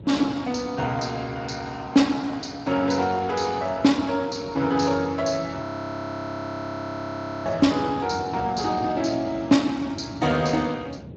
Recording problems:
lossy codec; Speex, log-spectral distance 6 dB, nothing above 17.4 kHz
wind on the microphone; below 340 Hz, SNR 15 dB
audio freezing; at 5.5 s for 2 s

